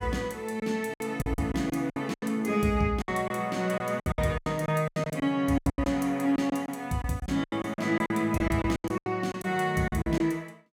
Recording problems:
packet loss; 16% of the sound replaced, filled with silence

